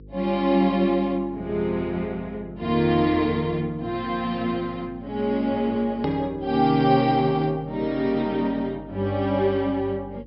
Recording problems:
low-pass filter; nothing above 5.4 kHz
hum; 50 Hz, harmonics up to 500 Hz, SNR 22 dB
edit click; at 6 s

